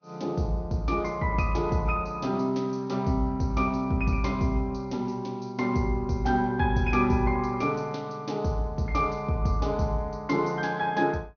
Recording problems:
low-pass filter; nothing above 6.3 kHz
lossy codec; Vorbis, log-spectral distance 2 dB

